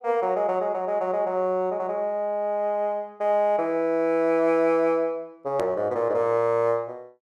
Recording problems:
click at an edit; at 5.5 s

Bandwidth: 12 kHz